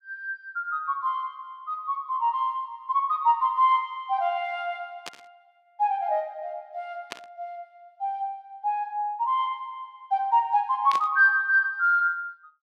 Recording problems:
burst of static; at 5 s, at 7 s and at 11 s; peak -5 dB vs average level

